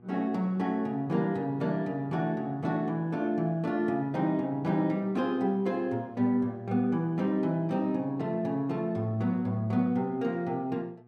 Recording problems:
mains hum; 60 Hz, harmonics up to 1.2 kHz, SNR 25 dB

